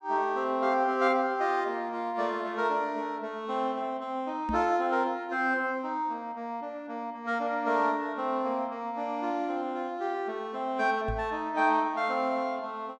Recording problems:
microphone bump; at 4.5 s and at 11 s; peak -1 dB vs average level

